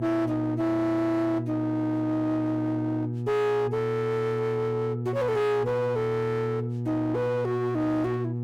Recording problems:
distortion; hard clipping, uneven, signal-to-distortion ratio 9 dB
hum; 60 Hz, harmonics up to 840 Hz, SNR 6 dB

